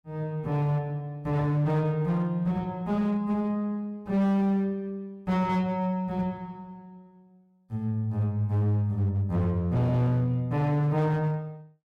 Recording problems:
distorted audio; hard clipping, signal-to-distortion ratio 11 dB

